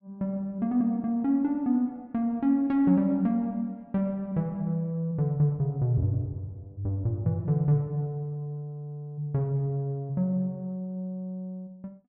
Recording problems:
none

